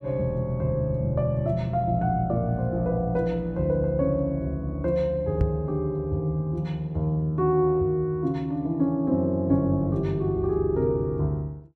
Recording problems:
knock on the microphone; at 5.5 s; peak +6 dB vs average level

